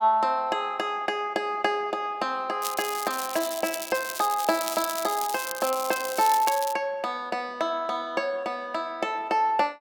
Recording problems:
crackle; from 2.5 to 6.5 s; loose cable, SNR 7 dB

